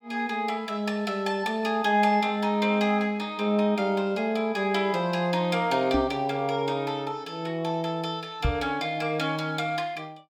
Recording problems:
knock on the microphone; at 6 s and at 8.5 s; peak +4 dB vs average level

